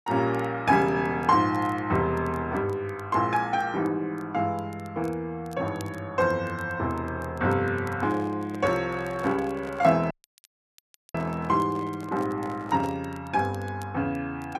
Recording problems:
crackle; vinyl, SNR 29 dB
handling noise; from 8 to 13 s; peak -8 dB vs average level
audio cutting out; at 10 s for 1 s

